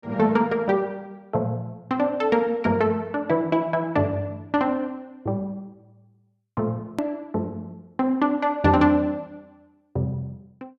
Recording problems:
click at an edit; at 7 s

